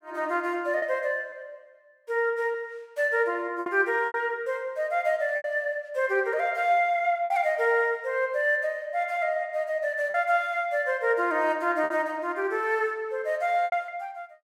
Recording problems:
lost packets; 4% of the sound replaced, filled with repeated pitch periods

